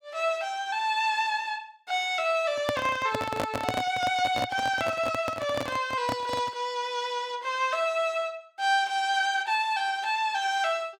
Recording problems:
microphone handling noise; from 2.5 to 6.5 s; peak +3 dB vs average level

